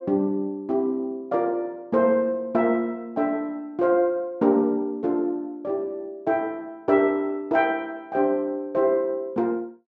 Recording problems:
none

